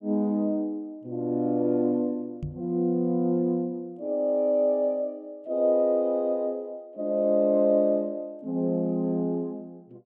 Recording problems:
knock on the microphone; at 2.5 s; peak -4 dB vs average level

